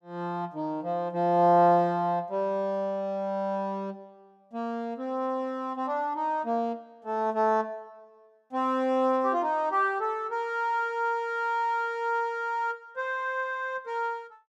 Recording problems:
none

